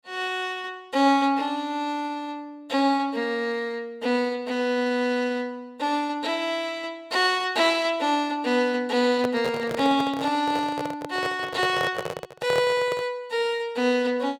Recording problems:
handling noise; from 9 to 13 s; peak -1 dB vs average level

